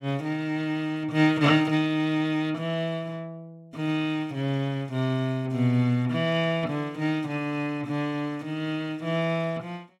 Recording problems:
none

